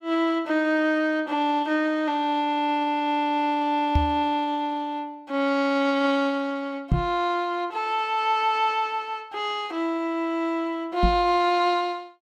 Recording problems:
microphone thump; at 4 s, at 7 s and at 11 s; peak +5 dB vs average level

